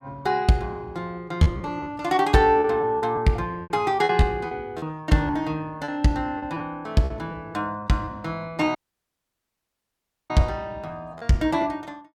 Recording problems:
packet loss; 8% of the sound replaced, filled with repeated pitch periods
audio cutting out; at 9 s for 1.5 s

